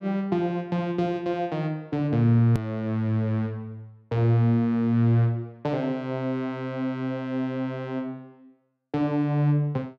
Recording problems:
hard cut with a click; at 2.5 s

